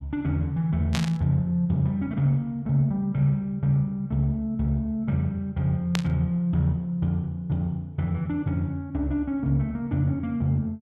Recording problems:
static burst; at 1 s and at 6 s; peak +1 dB vs average level

